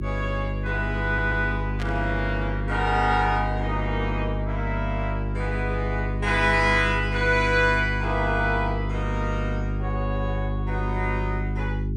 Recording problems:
hum; 50 Hz, harmonics up to 400 Hz, SNR 2 dB
audio stuttering; at 1 s
burst of static; at 2 s; peak -6 dB vs average level

